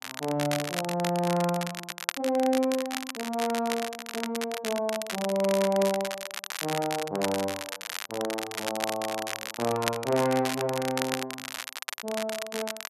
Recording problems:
crackle; vinyl, SNR 5 dB

